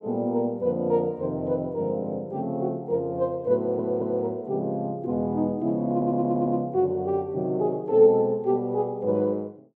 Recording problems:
stutter; at 3.5 s and at 6 s

